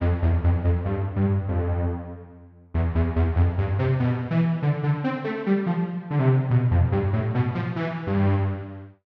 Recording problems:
none

